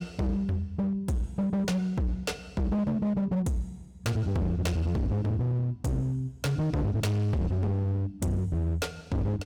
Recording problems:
distortion; hard clipping, signal-to-distortion ratio 6 dB

